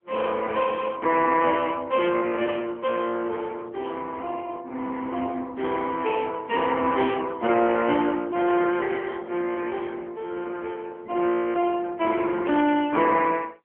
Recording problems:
telephone audio; 240 Hz to 3.1 kHz, AMR-NB

